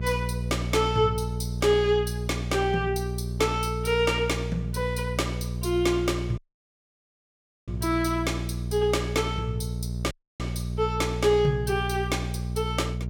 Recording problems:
hum; 60 Hz, harmonics up to 420 Hz, SNR 5 dB
audio cutting out; at 6.5 s for 1.5 s and at 10 s

